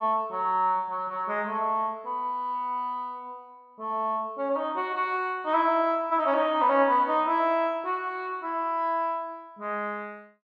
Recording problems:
none

